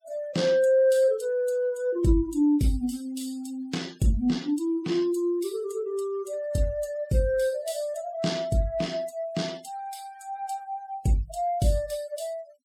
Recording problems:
noise reduction artefacts; signal-to-artefact ratio 22 dB

